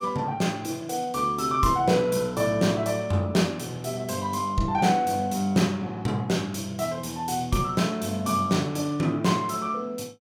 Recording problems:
none

